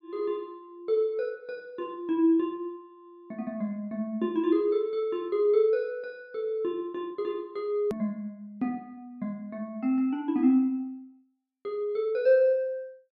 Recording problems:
hard cut with a click; at 8 s

